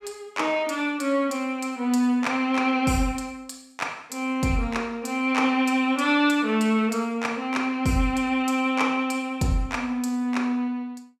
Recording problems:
none

